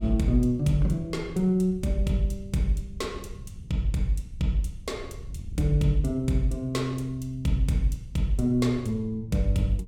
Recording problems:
wind on the microphone; below 100 Hz, SNR 16 dB

